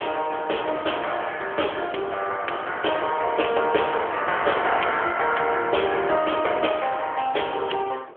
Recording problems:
phone line; 340 Hz to 3.3 kHz, AMR-NB
wind on the microphone; below 810 Hz, SNR 21 dB

